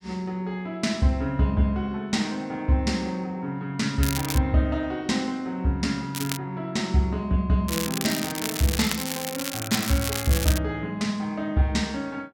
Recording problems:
crackle; at 4 s, at 6 s and from 7.5 to 11 s; loose cable, SNR 5 dB

